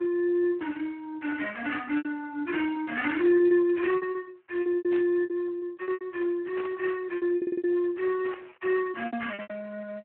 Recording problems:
telephone audio; 260 Hz to 3.1 kHz, Speex
packet loss; 12% of the sound replaced, filled with repeated pitch periods
burst of static; at 5 s, at 6.5 s and at 8.5 s; peak -10 dB vs average level
audio stuttering; at 7.5 s

